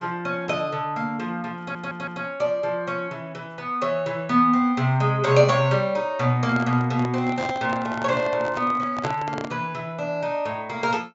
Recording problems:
treble cut off; nothing above 8 kHz
stutter; at 1.5 s
handling noise; from 6.5 to 9.5 s; peak -1 dB vs average level

